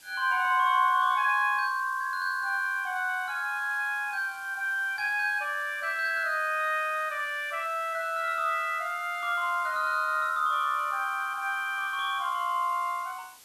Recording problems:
background hiss; SNR 23 dB

